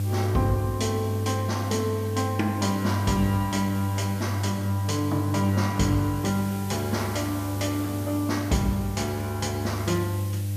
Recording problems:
hum; 50 Hz, harmonics up to 500 Hz, SNR 3 dB
hiss; slope +2 dB per octave, SNR 15 dB

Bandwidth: 14.5 kHz